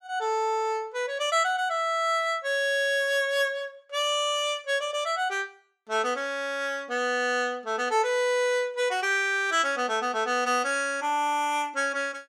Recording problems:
none

